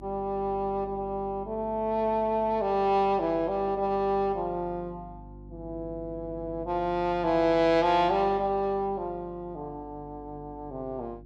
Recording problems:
hum; 50 Hz, harmonics up to 350 Hz, SNR 19 dB

